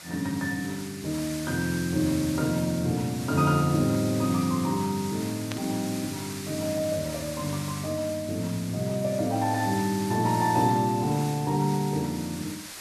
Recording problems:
background hiss; slope +1 dB per octave, SNR 11 dB
burst of static; at 5.5 s; peak -4 dB vs average level

